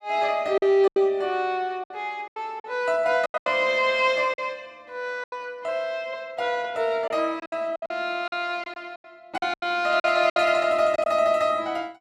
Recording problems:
packet loss; 10% of the sound replaced, filled with silence

